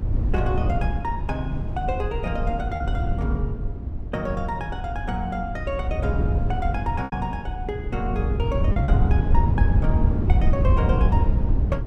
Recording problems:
electrical hum; 50 Hz, harmonics up to 400 Hz, SNR 18 dB
low-frequency rumble; below 66 Hz, SNR 6 dB
wind on the microphone; below 110 Hz, SNR -4 dB
lost packets; 1.8% of the sound replaced, filled with repeated pitch periods

